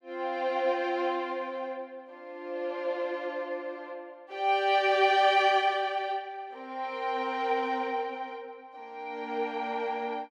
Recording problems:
none

